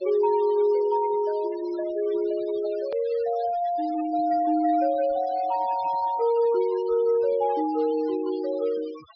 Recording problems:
treble missing; nothing above 5.5 kHz
denoising artefacts; signal-to-artefact ratio 22 dB
edit click; at 3 s

